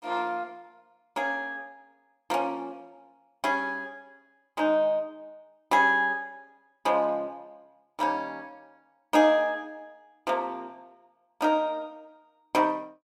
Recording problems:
none

